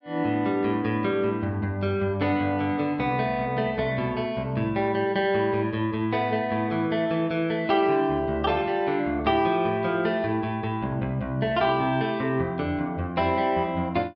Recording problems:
treble missing; nothing above 5.5 kHz

